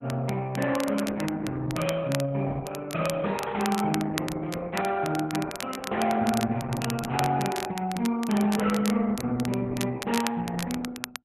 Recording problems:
lossy codec; Opus, log-spectral distance 3 dB
crackle; vinyl, SNR 10 dB

